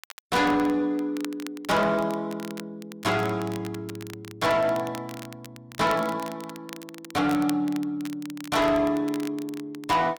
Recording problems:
lossy compression; Vorbis, log-spectral distance 2 dB, nothing above 16.5 kHz
distorted audio; soft clipping, signal-to-distortion ratio 11 dB
crackling; vinyl, SNR 18 dB

